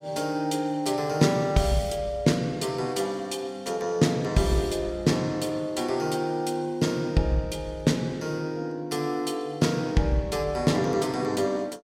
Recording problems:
none

